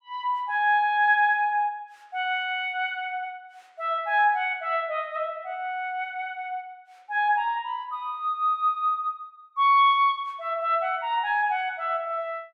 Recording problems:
none

